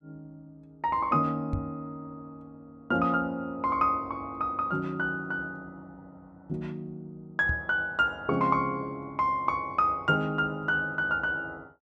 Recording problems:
microphone thump; at 1.5 s and at 7.5 s; peak +1 dB vs average level

